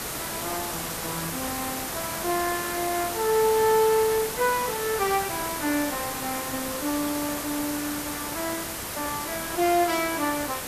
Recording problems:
hiss; slope -3 dB per octave, SNR 3 dB

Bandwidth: 14.5 kHz